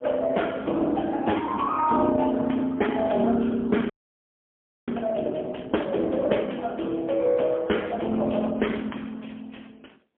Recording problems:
telephone audio; 190 Hz to 3.3 kHz, AMR-NB, then MP3
frozen audio; at 4 s for 1 s

